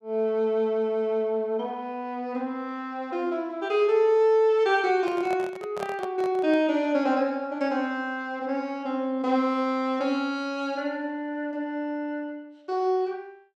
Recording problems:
handling noise; from 5 to 6.5 s; peak -5 dB vs average level

